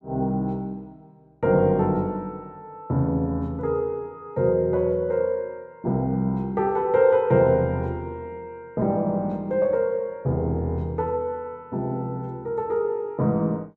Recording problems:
none

